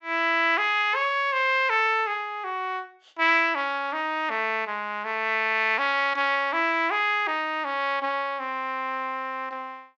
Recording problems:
low-pass filter; nothing above 8 kHz

